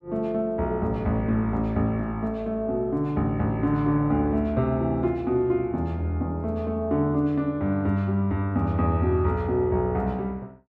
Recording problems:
none

